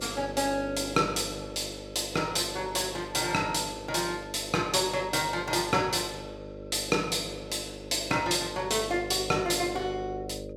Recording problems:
electrical hum; 50 Hz, harmonics up to 600 Hz, SNR 12 dB

